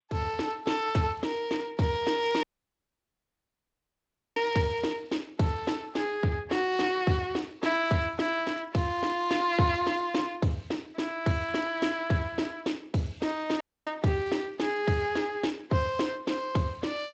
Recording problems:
codec artefacts; G.722, then Speex, log-spectral distance 4 dB, nothing above 7.6 kHz
audio cutting out; at 2.5 s for 2 s and at 14 s

